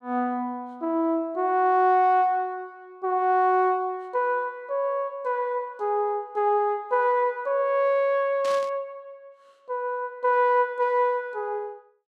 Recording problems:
burst of static; at 8.5 s; peak -10 dB vs average level

